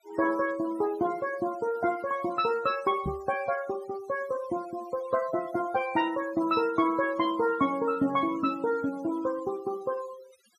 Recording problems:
noise reduction artefacts; signal-to-artefact ratio 19 dB
microphone thump; at 3 s; peak -1 dB vs average level

